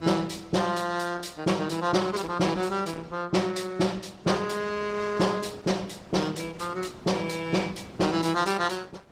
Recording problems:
lossy codec; Opus, log-spectral distance 4 dB, nothing above 18.3 kHz
wind noise; below 670 Hz, SNR 21 dB

